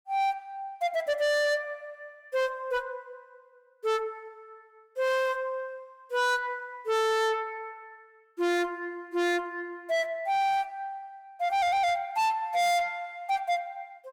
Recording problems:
distorted audio; soft clipping, signal-to-distortion ratio 7 dB

